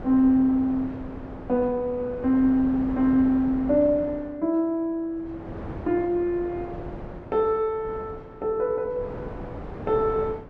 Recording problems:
wind on the microphone; below 570 Hz, SNR 14 dB

